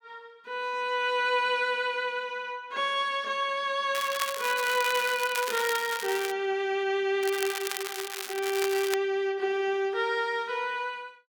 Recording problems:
crackle; from 4 to 6.5 s and from 7 to 9 s; loose cable, SNR 7 dB

